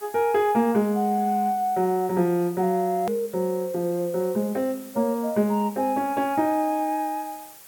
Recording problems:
hiss; slope -1 dB per octave, SNR 20 dB
edit click; at 3 s

